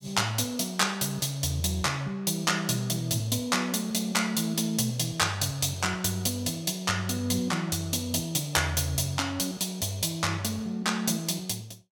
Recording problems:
none

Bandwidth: 17 kHz